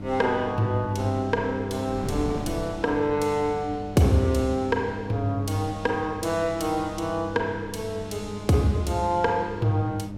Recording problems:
hum; 50 Hz, harmonics up to 600 Hz, SNR 11 dB
wind noise; below 280 Hz, SNR 15 dB

